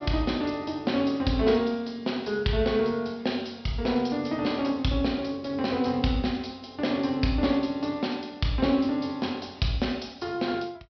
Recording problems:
low-pass filter; nothing above 5.5 kHz

